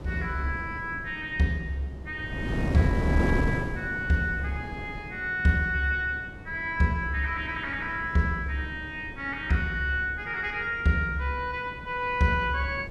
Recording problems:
wind noise; below 350 Hz, SNR 7 dB

